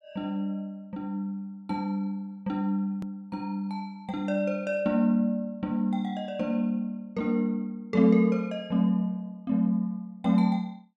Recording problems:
edit click; at 3 s

